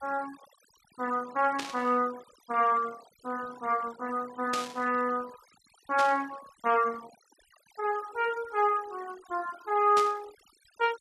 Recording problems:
denoising artefacts; signal-to-artefact ratio 20 dB
static burst; 4 times, first at 1.5 s; peak -1 dB vs average level

